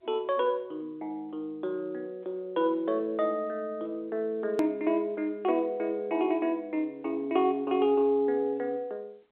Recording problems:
phone line; 280 Hz to 3.6 kHz, G.711
click at an edit; at 4.5 s

